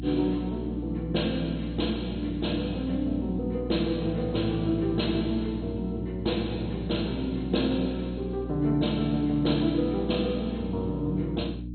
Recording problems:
lossy codec; MP2, log-spectral distance 3 dB, nothing above 4.2 kHz
electrical hum; 60 Hz, harmonics up to 300 Hz, SNR 7 dB

